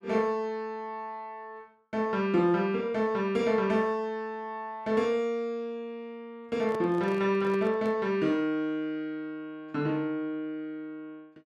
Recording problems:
handling noise; from 6.5 to 8 s; peak -7 dB vs average level

